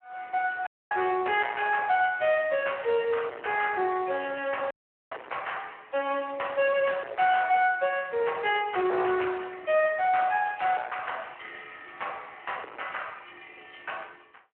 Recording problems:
phone line; 320 Hz to 3.1 kHz, Speex
distortion; hard clipping, uneven, signal-to-distortion ratio 8 dB
dropout; at 0.5 s and at 4.5 s

